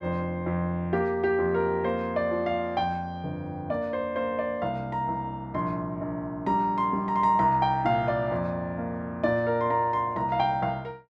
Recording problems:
none

